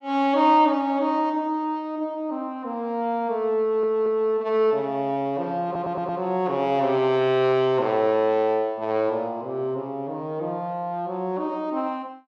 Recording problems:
audio stuttering; at 3.5 s and at 5.5 s

